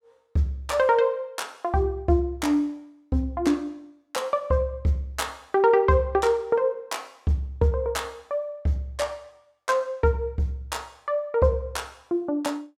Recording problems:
none

